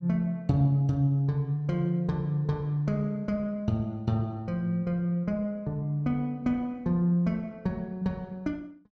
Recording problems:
none

